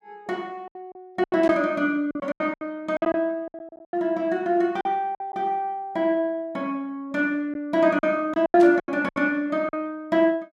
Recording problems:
lost packets; 11% of the sound replaced, filled with silence
burst of static; at 1.5 s and at 8.5 s; peak -12 dB vs average level

